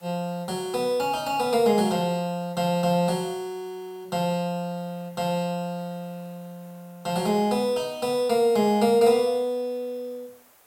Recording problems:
hiss; SNR 30 dB

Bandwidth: 16.5 kHz